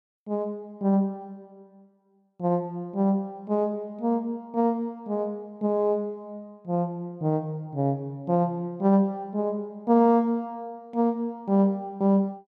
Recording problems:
none

